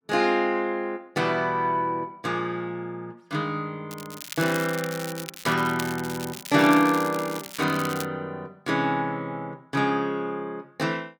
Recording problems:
crackle; from 4 to 8 s; loose cable, SNR 12 dB

